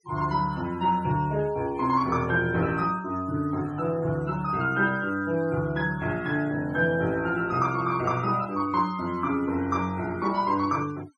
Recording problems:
noise reduction artefacts; signal-to-artefact ratio 23 dB

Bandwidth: 11.5 kHz